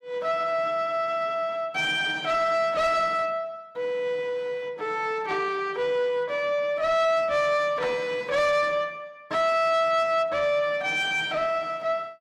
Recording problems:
distorted audio; soft clipping, signal-to-distortion ratio 11 dB

